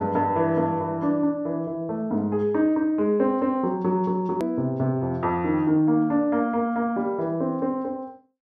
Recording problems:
click at an edit; at 4.5 s

